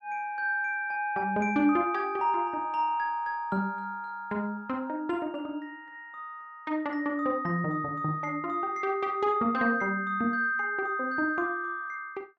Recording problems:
none

